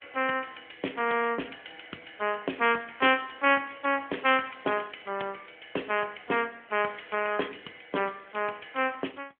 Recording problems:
phone line; 260 Hz to 3.3 kHz, AMR-NB

